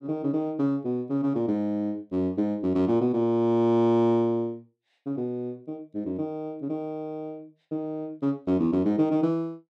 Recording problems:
none

